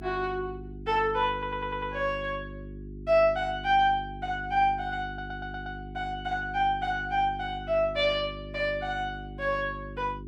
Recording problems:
hum; 50 Hz, harmonics up to 400 Hz, SNR 13 dB
stutter; at 1.5 s and at 5 s

